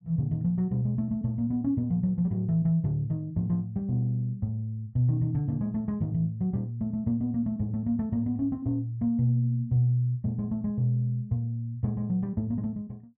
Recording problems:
none

